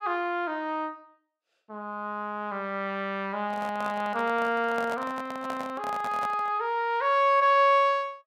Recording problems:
handling noise; from 3.5 to 6.5 s; peak -7 dB vs average level

